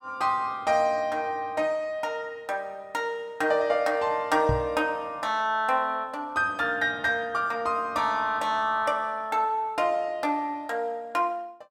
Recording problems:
knock on the microphone; at 4.5 s; peak +2 dB vs average level

